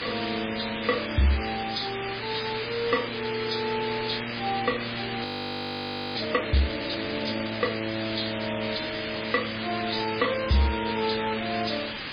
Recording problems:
codec artefacts; MP3, log-spectral distance 19 dB, nothing above 5 kHz
distortion; soft clipping, signal-to-distortion ratio 10 dB
background hiss; SNR 3 dB
audio freezing; at 5 s for 1 s

